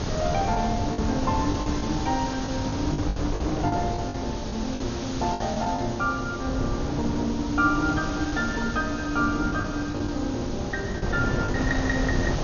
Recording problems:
lossy compression; MP2, log-spectral distance 11 dB, nothing above 6.5 kHz
hiss; SNR 11 dB
wind noise; below 400 Hz, SNR 3 dB
lost packets; 7% of the sound replaced, filled with the last packet

